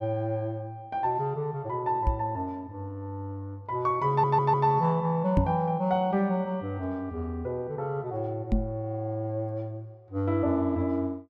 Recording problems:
microphone thump; at 2 s, at 5.5 s and at 8.5 s; peak +7 dB vs average level
audio stuttering; at 4 s

